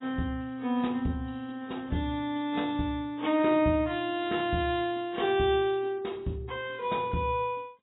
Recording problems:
lossy compression; AAC, log-spectral distance 3 dB, nothing above 3.7 kHz

